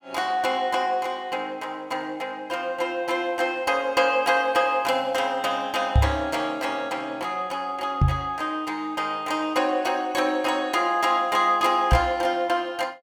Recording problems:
knock on the microphone; at 6 s, at 8 s and at 12 s; peak +8 dB vs average level

